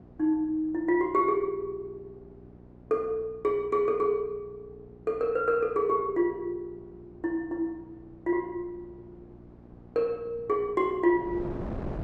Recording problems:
electrical hum; 60 Hz, harmonics up to 840 Hz, SNR 24 dB
wind on the microphone; below 460 Hz, SNR 19 dB

